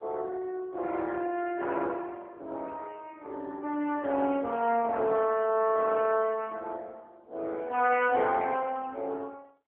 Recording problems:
phone line; 240 Hz to 3.2 kHz, AMR-NB

